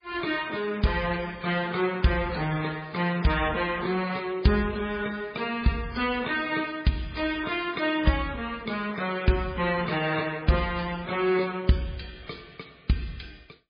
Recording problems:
codec artefacts; AAC, then MP3, log-spectral distance 5 dB, nothing above 4.1 kHz

